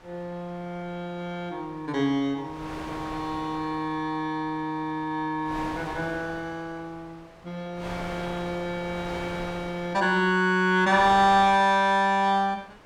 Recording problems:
wind noise; below 1.8 kHz, SNR 16 dB

